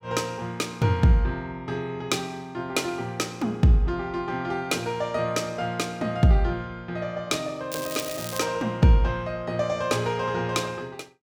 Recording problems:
crackling; at 7.5 s; loose cable, SNR 9 dB

